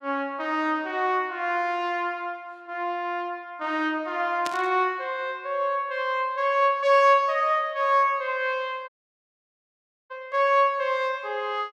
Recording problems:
static burst; at 4.5 s; peak -4 dB vs average level
dropout; at 9 s for 1 s

